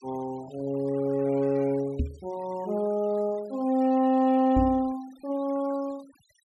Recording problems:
denoising artefacts; signal-to-artefact ratio 24 dB
knock on the microphone; at 2 s and at 4.5 s; peak +2 dB vs average level

